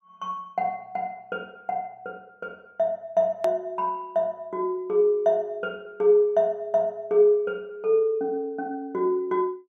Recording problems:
edit click; at 3.5 s

